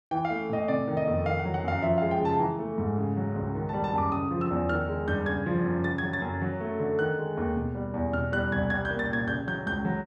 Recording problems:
none

